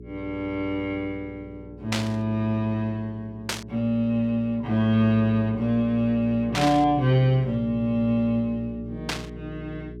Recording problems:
hum; 60 Hz, harmonics up to 420 Hz, SNR 16 dB
static burst; 4 times, first at 2 s; peak +1 dB vs average level

